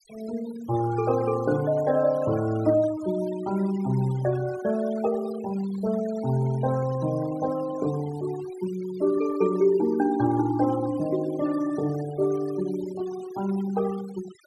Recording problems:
noise reduction artefacts; signal-to-artefact ratio 17 dB

